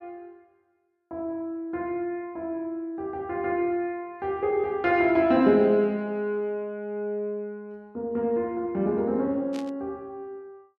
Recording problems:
static burst; at 9.5 s; peak -12 dB vs average level

